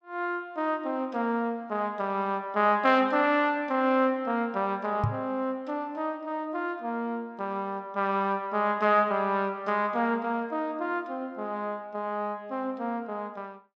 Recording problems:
microphone thump; at 5 s; peak +4 dB vs average level

